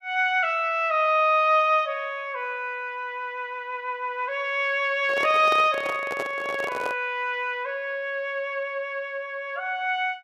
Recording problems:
microphone handling noise; from 5 to 7 s; peak -3 dB vs average level

